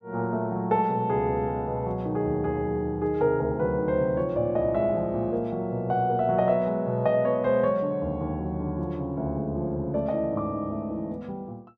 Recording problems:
none

